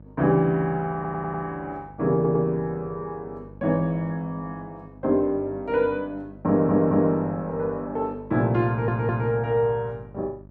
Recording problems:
hum; 50 Hz, harmonics up to 900 Hz, SNR 22 dB
stutter; 4 times, first at 1 s

